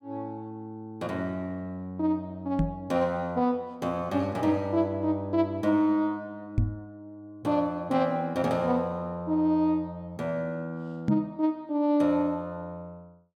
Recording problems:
microphone thump; at 2.5 s, at 6.5 s and at 11 s; peak +6 dB vs average level

